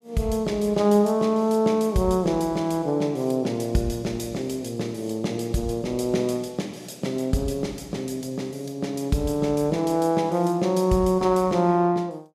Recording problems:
none

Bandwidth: 14.5 kHz